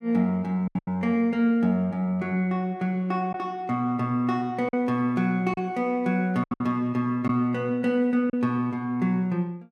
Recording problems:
lost packets; 4% of the sound replaced, filled with silence

